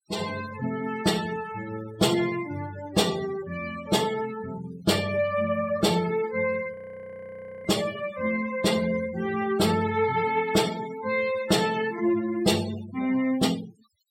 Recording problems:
noise reduction artefacts; signal-to-artefact ratio 15 dB
audio freezing; at 6.5 s for 1 s

